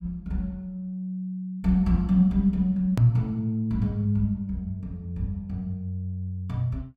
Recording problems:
click at an edit; at 3 s

